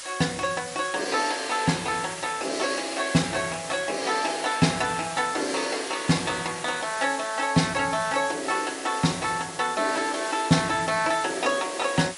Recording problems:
lossy compression; MP3, log-spectral distance 13 dB, nothing above 10.7 kHz
hiss; SNR 10 dB

